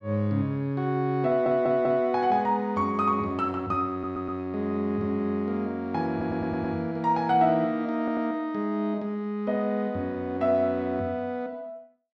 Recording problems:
audio stuttering; 4 times, first at 1.5 s

